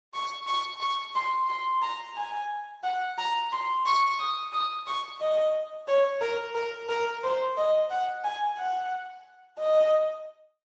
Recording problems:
lossy codec; MP3, then Speex, log-spectral distance 3 dB, nothing above 7.3 kHz

